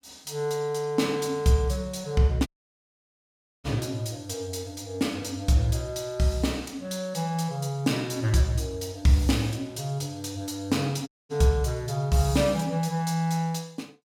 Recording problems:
audio cutting out; at 2.5 s for 1 s and at 11 s

